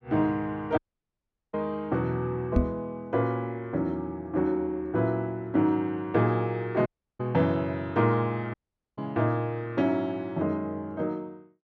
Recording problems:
dropout; at 1 s for 1 s, at 7 s and at 8.5 s
microphone bump; at 2.5 s; peak +8 dB vs average level

